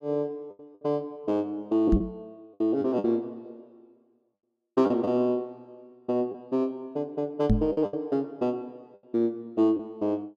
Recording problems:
lost packets; 5% of the sound replaced, filled with the last packet
microphone bump; at 2 s and at 7.5 s; peak +9 dB vs average level

